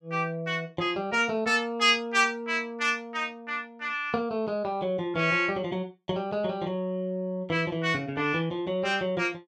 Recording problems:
none

